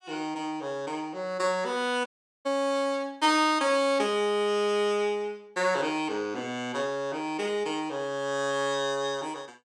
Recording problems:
audio cutting out; at 2 s

